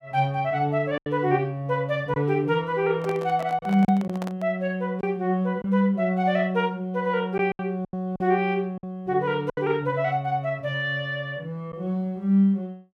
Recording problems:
lost packets; 4% of the sound replaced, filled with silence
microphone handling noise; from 3 to 4.5 s; peak -7 dB vs average level

